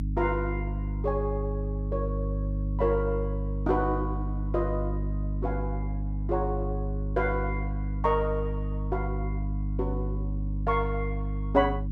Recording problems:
electrical hum; 50 Hz, harmonics up to 300 Hz, SNR 1 dB

